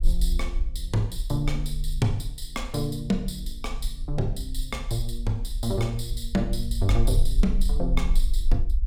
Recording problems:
rumble; below 44 Hz, strongest tone 20 Hz, SNR 1 dB

